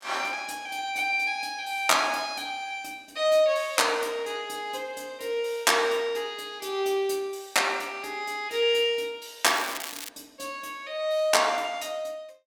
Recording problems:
crackling; at 9.5 s; loose cable, SNR 10 dB

